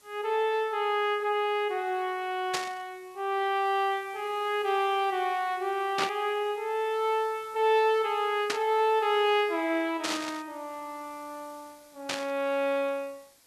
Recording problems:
hiss; slope -1 dB per octave, SNR 27 dB
burst of static; 5 times, first at 2.5 s; peak +2 dB vs average level

